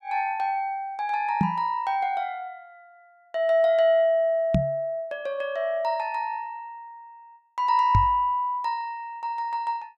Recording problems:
microphone thump; at 1.5 s, at 4.5 s and at 8 s; peak +6 dB vs average level

